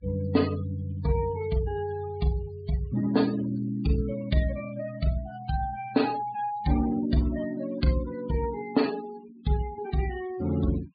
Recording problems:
treble missing; nothing above 4.8 kHz
noise reduction artefacts; signal-to-artefact ratio 15 dB

